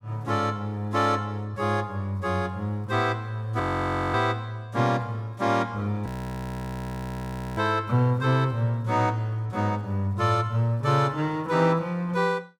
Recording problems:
frozen audio; at 3.5 s for 0.5 s and at 6 s for 1.5 s

